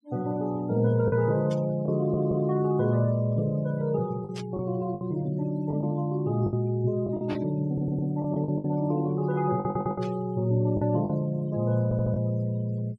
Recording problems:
denoising artefacts; signal-to-artefact ratio 24 dB
lost packets; 6% of the sound replaced, filled with the last packet
burst of static; 4 times, first at 1.5 s; peak -10 dB vs average level
audio stuttering; 4 times, first at 2 s

